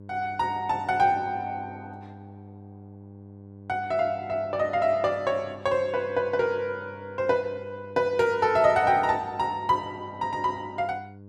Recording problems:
electrical hum; 50 Hz, harmonics up to 600 Hz, SNR 19 dB

